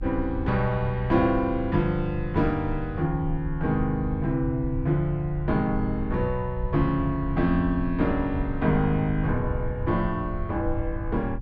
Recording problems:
low-frequency rumble; below 88 Hz, SNR 9 dB

